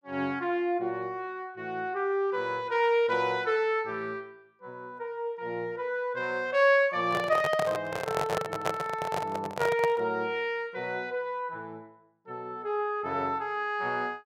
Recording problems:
microphone handling noise; from 7 to 10 s; peak +3 dB vs average level

